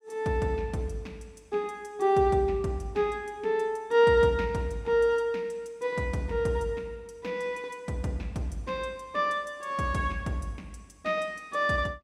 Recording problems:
none

